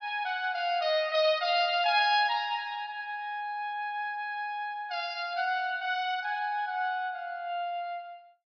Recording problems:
low-pass filter; nothing above 5.5 kHz

